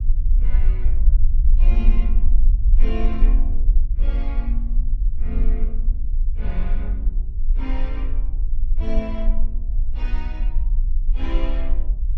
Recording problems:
rumble; below 40 Hz, strongest tone 18 Hz, SNR -12 dB

